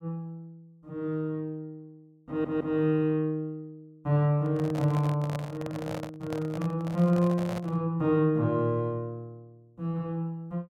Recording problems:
stutter; at 2.5 s
handling noise; from 4.5 to 8 s; peak -4 dB vs average level

